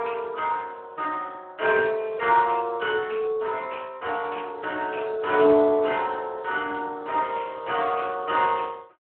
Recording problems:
telephone audio; 320 Hz to 3.5 kHz, Speex

